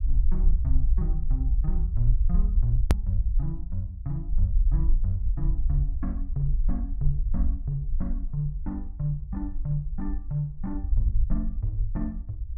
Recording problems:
rumble; below 54 Hz, SNR -4 dB
click at an edit; at 3 s

